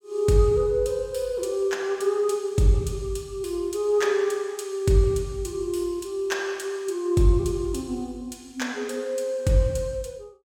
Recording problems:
none

